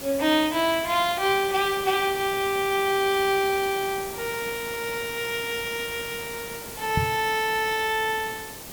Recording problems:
background hiss; SNR 11 dB
knock on the microphone; at 7 s; peak +3 dB vs average level

